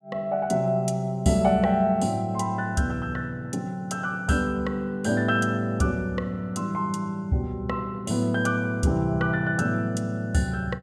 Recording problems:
none

